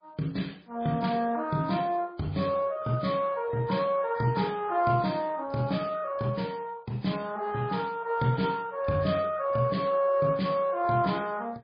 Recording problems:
lossy compression; MP2, then MP3, log-spectral distance 4 dB, nothing above 4.5 kHz

